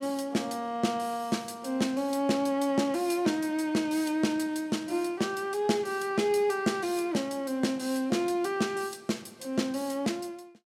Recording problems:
none

